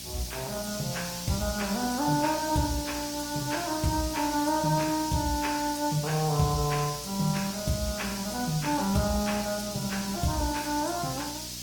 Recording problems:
lossy compression; Opus, log-spectral distance 7 dB, nothing above 18.3 kHz
hum; 60 Hz, harmonics up to 1 kHz, SNR 18 dB
background hiss; SNR 8 dB

